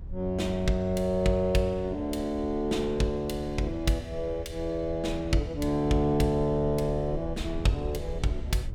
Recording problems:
low-frequency rumble; below 74 Hz, SNR 12 dB

